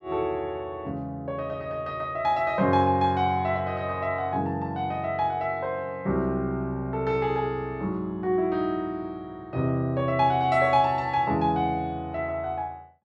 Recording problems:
none

